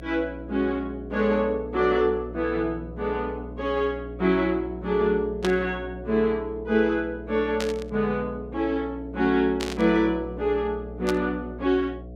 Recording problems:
hum; 60 Hz, harmonics up to 720 Hz, SNR 14 dB
static burst; 4 times, first at 5.5 s; peak -1 dB vs average level

